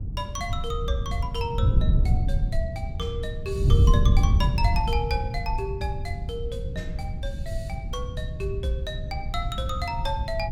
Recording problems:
wind noise; below 110 Hz, SNR -5 dB

